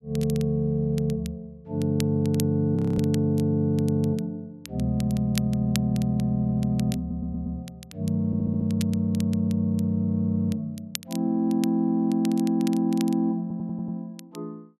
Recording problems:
crackling; vinyl, SNR 17 dB
frozen audio; at 3 s
stutter; at 7 s, at 8.5 s and at 13 s

